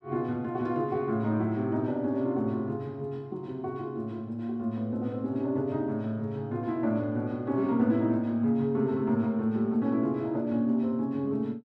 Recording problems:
none

